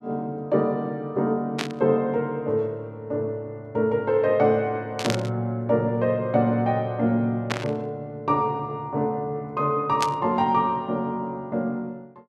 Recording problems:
burst of static; 4 times, first at 1.5 s; peak +2 dB vs average level

